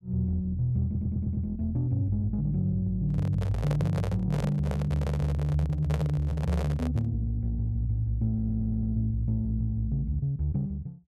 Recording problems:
audio stuttering; at 1 s and at 8.5 s
microphone handling noise; from 3 to 7 s; peak -3 dB vs average level

